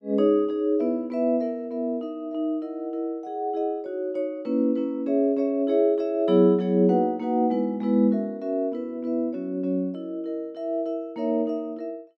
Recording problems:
none

